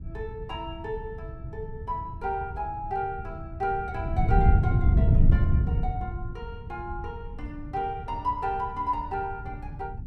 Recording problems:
wind noise; below 120 Hz, SNR -6 dB

